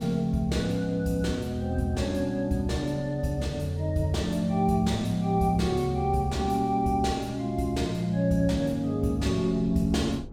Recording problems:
wind on the microphone; below 260 Hz, SNR 19 dB

